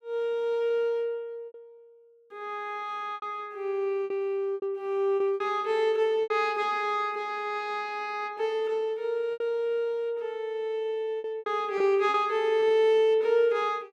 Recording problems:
packet loss; 6% of the sound replaced, filled with repeated pitch periods

